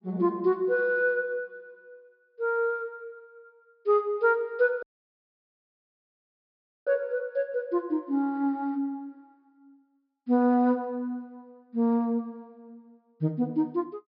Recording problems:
low-pass filter; nothing above 5.5 kHz
dropout; at 5 s for 2 s

